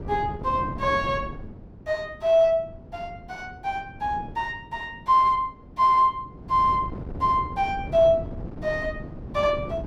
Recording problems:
wind on the microphone; below 300 Hz, SNR 15 dB

